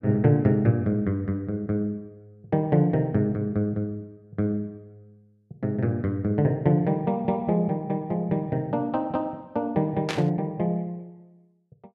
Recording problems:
burst of static; at 10 s; peak 0 dB vs average level

